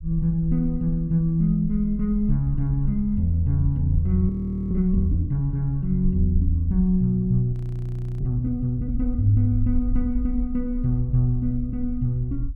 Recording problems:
rumble; below 52 Hz, SNR 8 dB
frozen audio; at 4.5 s and at 7.5 s for 0.5 s

